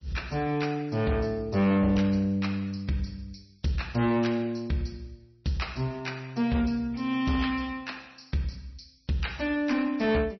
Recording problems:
codec artefacts; MP3, log-spectral distance 4 dB, nothing above 5.8 kHz
distortion; soft clipping, signal-to-distortion ratio 10 dB

